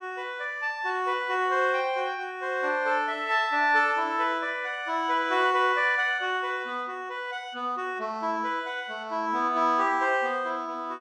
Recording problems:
none

